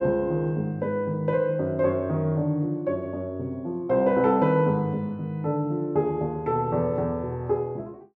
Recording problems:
none

